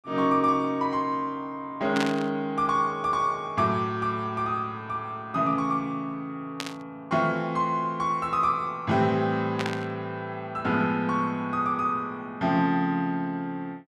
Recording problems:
static burst; at 2 s, at 6.5 s and at 9.5 s; peak 0 dB vs average level

